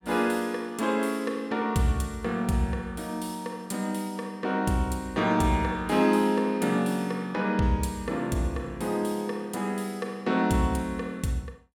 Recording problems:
none

